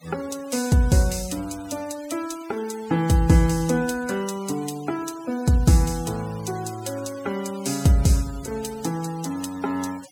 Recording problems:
denoising artefacts; signal-to-artefact ratio 18 dB

